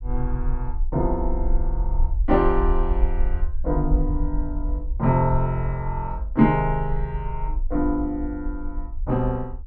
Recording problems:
rumble; below 50 Hz, SNR 3 dB

